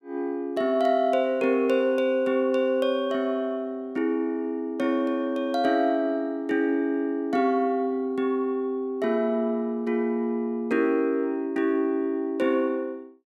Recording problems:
none

